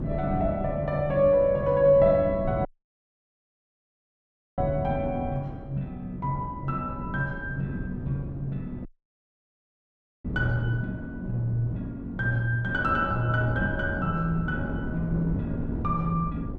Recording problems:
wind noise; below 250 Hz, SNR 9 dB
audio cutting out; at 2.5 s for 2 s and at 9 s for 1.5 s

